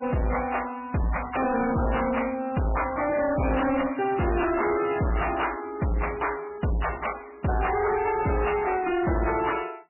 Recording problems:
lossy codec; MP3, log-spectral distance 8 dB, nothing above 2.8 kHz
distorted audio; hard clipping, signal-to-distortion ratio 7 dB

